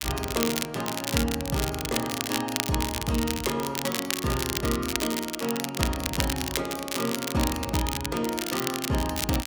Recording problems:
crackling; vinyl, SNR 2 dB

